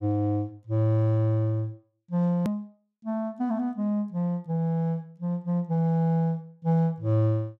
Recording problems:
click at an edit; at 2.5 s

